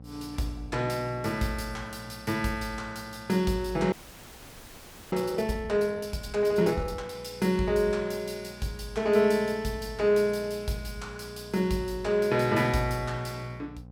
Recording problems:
electrical hum; 60 Hz, harmonics up to 840 Hz, SNR 20 dB
audio freezing; at 4 s for 1 s

